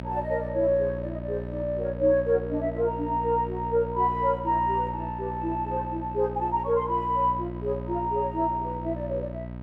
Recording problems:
electrical hum; 60 Hz, harmonics up to 1 kHz, SNR 9 dB

